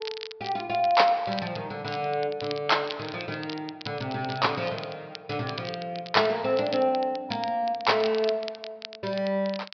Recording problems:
treble cut off; nothing above 5.5 kHz
crackling; vinyl, SNR 14 dB

